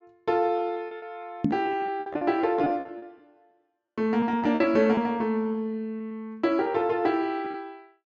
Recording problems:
low-pass filter; nothing above 8 kHz
packet loss; 13% of the sound replaced, filled with repeated pitch periods
knock on the microphone; at 1.5 s; peak +6 dB vs average level

